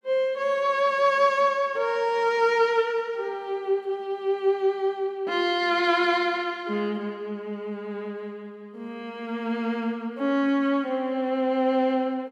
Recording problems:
none

